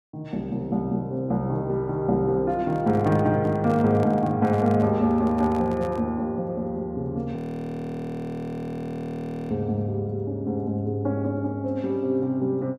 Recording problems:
microphone handling noise; from 2.5 to 6 s; peak -8 dB vs average level
frozen audio; at 7.5 s for 2 s

